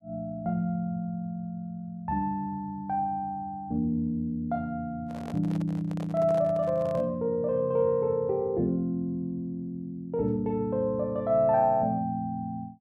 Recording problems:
microphone handling noise; from 5 to 7 s; peak -9 dB vs average level

